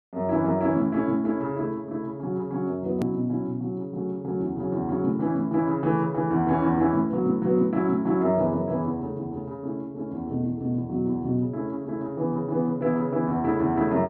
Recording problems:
click at an edit; at 3 s

